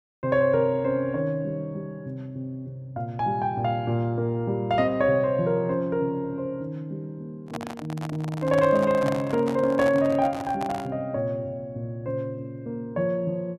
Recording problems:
microphone handling noise; from 7.5 to 11 s; peak -3 dB vs average level

